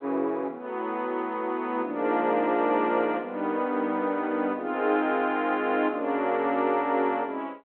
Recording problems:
phone line; 240 Hz to 3.5 kHz, G.726

